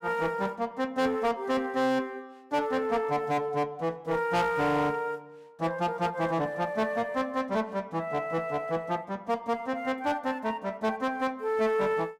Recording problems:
distorted audio; hard clipping, uneven, signal-to-distortion ratio 11 dB

